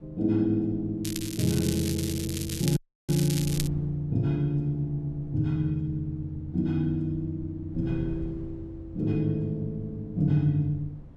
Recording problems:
wind on the microphone; below 140 Hz, SNR 18 dB
crackle; from 1 to 3.5 s; loose cable, SNR 8 dB
dropout; at 3 s

